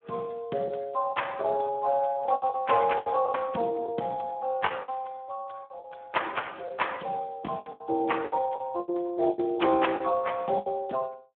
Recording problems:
phone line; 170 Hz to 3.5 kHz, Speex
lost packets; 10% of the sound replaced, filled with the last packet

